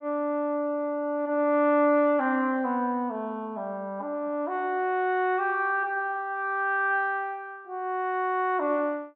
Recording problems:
none

